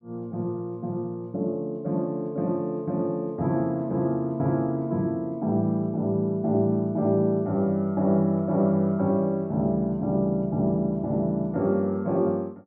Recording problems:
none

